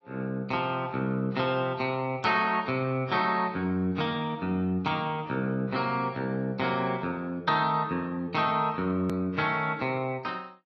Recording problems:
lossy codec; AAC, log-spectral distance 2 dB, nothing above 13.1 kHz
click at an edit; at 9 s

